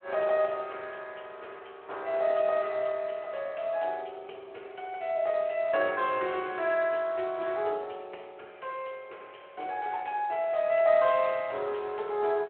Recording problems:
phone line; 320 Hz to 3.7 kHz, Speex

